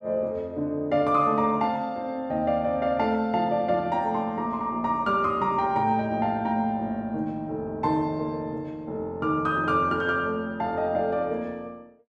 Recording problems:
none

